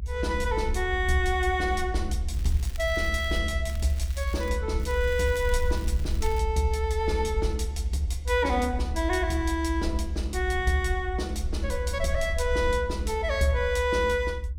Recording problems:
rumble; below 72 Hz, SNR 3 dB
crackling; from 2.5 to 3.5 s, at 3.5 s and from 5 to 6.5 s; loose cable, SNR 19 dB

